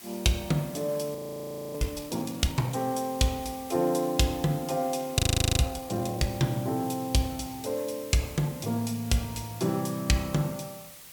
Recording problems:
background hiss; slope +1 dB per octave, SNR 16 dB
audio freezing; at 1 s for 0.5 s and at 5 s

